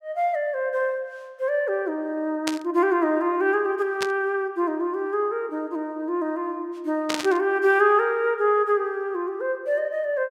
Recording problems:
burst of static; at 2.5 s, at 4 s and at 7 s; peak 0 dB vs average level

